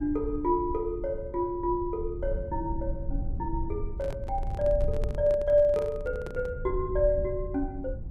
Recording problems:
low-frequency rumble; below 74 Hz, SNR 8 dB
microphone handling noise; from 4 to 6.5 s; peak -6 dB vs average level

